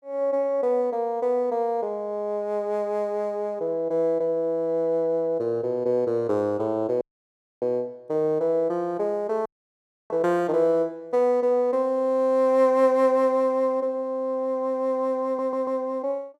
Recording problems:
dropout; at 7 s for 0.5 s and at 9.5 s for 0.5 s
audio stuttering; at 15 s

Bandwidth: 13.5 kHz